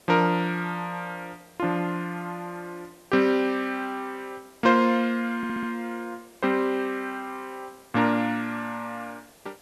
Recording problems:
hiss; SNR 27 dB
audio stuttering; at 5.5 s

